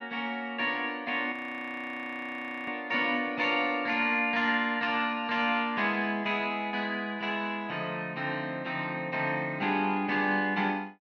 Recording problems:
audio freezing; at 1.5 s for 1.5 s

